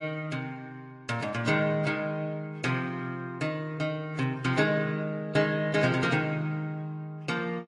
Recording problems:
lossy codec; AAC, then MP3, log-spectral distance 2 dB, nothing above 11 kHz

